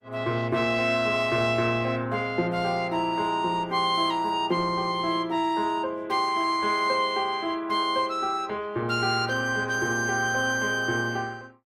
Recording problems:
codec artefacts; Opus, log-spectral distance 2 dB

